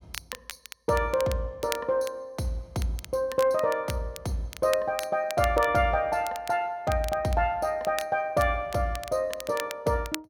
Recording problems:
crackling; vinyl, SNR 14 dB

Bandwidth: 16.5 kHz